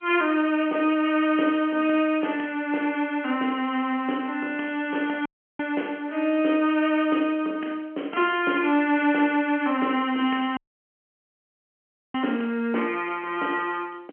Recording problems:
phone line; 240 Hz to 3.2 kHz, G.711
dropout; at 5.5 s and at 11 s for 1.5 s

